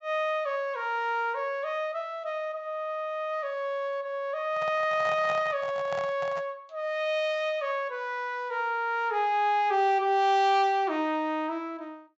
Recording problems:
treble missing; nothing above 8 kHz
microphone handling noise; from 4.5 to 6.5 s; peak -5 dB vs average level

